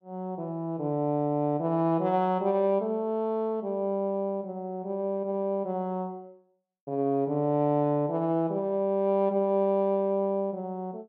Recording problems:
none

